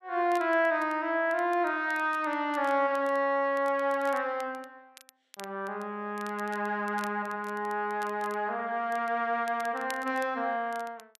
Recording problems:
crackling; vinyl, SNR 23 dB

